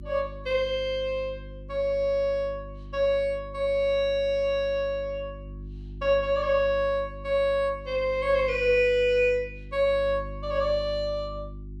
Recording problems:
hum; 50 Hz, harmonics up to 350 Hz, SNR 16 dB

